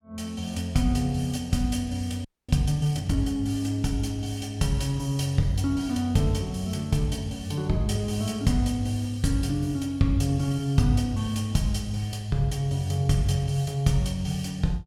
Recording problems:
frozen audio; at 2.5 s

